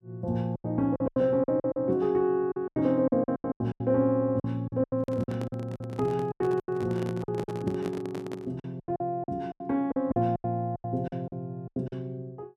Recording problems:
lost packets; 16% of the sound replaced, filled with silence
microphone handling noise; from 5 to 8.5 s; peak -4 dB vs average level

